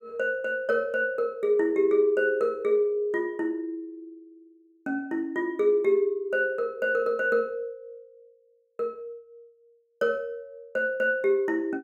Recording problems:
none

